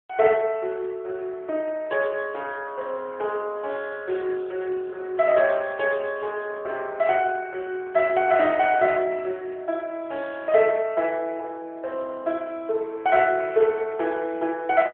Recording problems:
telephone audio; 300 Hz to 3.4 kHz, AMR-NB

